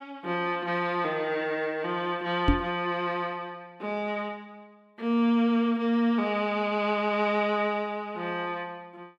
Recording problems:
microphone thump; at 2.5 s; peak +8 dB vs average level

